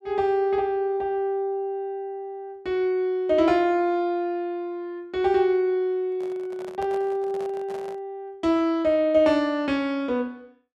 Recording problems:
microphone handling noise; from 6 to 8 s; peak -9 dB vs average level

